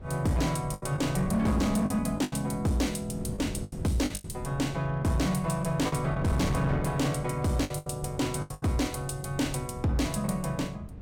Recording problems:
distorted audio; hard clipping, signal-to-distortion ratio 11 dB
wind noise; below 190 Hz, SNR 10 dB
packet loss; 8% of the sound replaced, filled with the last packet

